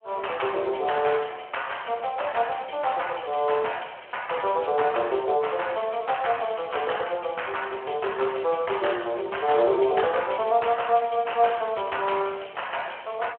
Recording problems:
telephone audio; 320 Hz to 3.2 kHz, Speex

